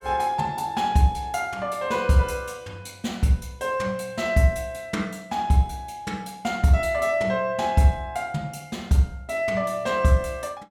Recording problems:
none

